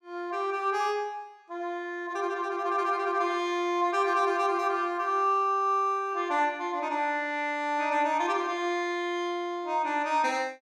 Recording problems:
none

